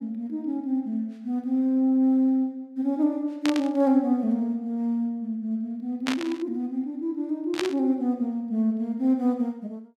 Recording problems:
static burst; at 3.5 s, at 6 s and at 7.5 s; peak +1 dB vs average level

